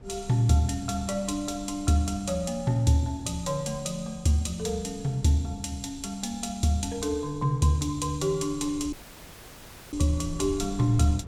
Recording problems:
wind noise; below 120 Hz, SNR 19 dB
audio cutting out; at 9 s for 1 s

